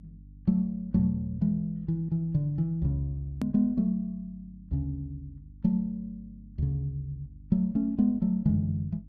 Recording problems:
mains hum; 50 Hz, harmonics up to 300 Hz, SNR 22 dB
hard cut with a click; at 3.5 s

